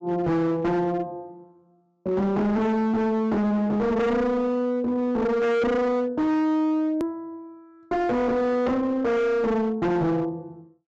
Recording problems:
treble missing; nothing above 8 kHz
distortion; hard clipping, signal-to-distortion ratio 8 dB
edit click; at 7 s

